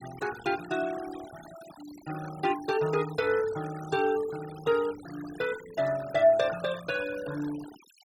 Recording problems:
denoising artefacts; signal-to-artefact ratio 16 dB

